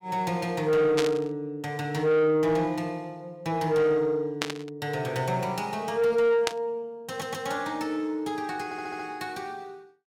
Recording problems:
distorted audio; soft clipping, signal-to-distortion ratio 11 dB
burst of static; at 1 s, at 4.5 s and at 6.5 s; peak +4 dB vs average level
audio stuttering; at 7 s and at 8.5 s

